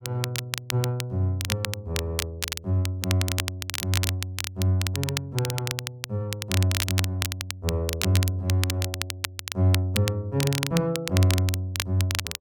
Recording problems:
crackle; vinyl, SNR 4 dB

